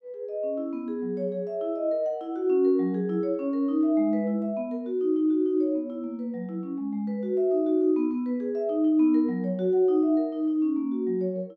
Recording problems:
none

